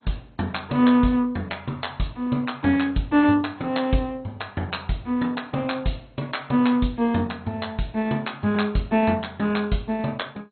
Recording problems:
codec artefacts; MP2, log-spectral distance 4 dB, nothing above 4.2 kHz

